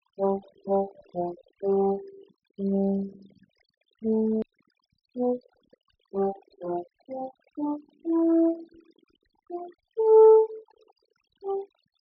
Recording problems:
treble cut off; nothing above 5.5 kHz
denoising artefacts; signal-to-artefact ratio 23 dB
edit click; at 4.5 s

